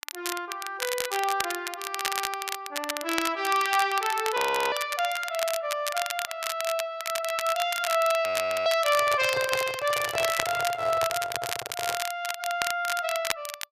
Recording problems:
crackling; vinyl, SNR 5 dB
audio freezing; at 4.5 s and at 8.5 s
microphone handling noise; from 9 to 12 s; peak -2 dB vs average level

